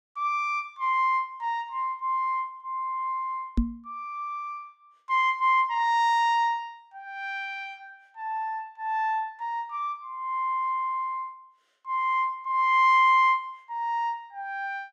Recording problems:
microphone bump; at 3.5 s; peak +5 dB vs average level

